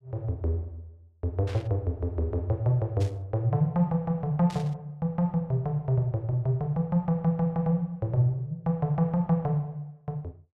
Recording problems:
burst of static; at 1.5 s, at 3 s and at 4.5 s; peak -12 dB vs average level

